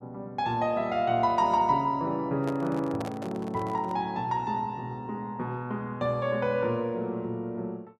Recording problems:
handling noise; from 2.5 to 4 s; peak -4 dB vs average level

